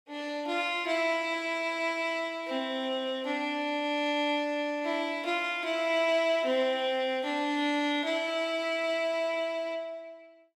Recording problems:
none

